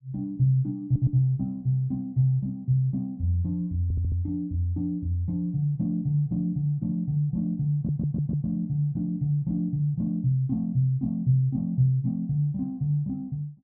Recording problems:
stutter; at 1 s, at 4 s and at 7.5 s

